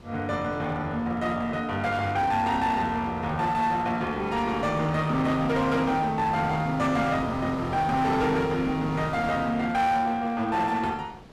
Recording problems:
distortion; hard clipping, uneven, signal-to-distortion ratio 10 dB
wind on the microphone; below 790 Hz, SNR 16 dB

